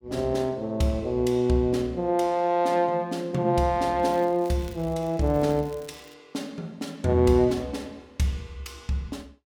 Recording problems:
crackle; from 4 to 6 s; loose cable, SNR 26 dB

